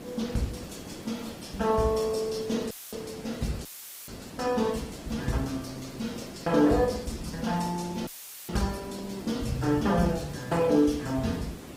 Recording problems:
lossy codec; Opus, log-spectral distance 5 dB, nothing above 15.5 kHz
background hiss; SNR 14 dB
audio cutting out; at 2.5 s, at 3.5 s and at 8 s; filled with static

